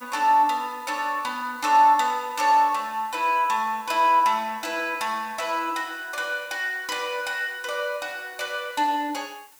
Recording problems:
hiss; slope 0 dB per octave, SNR 26 dB

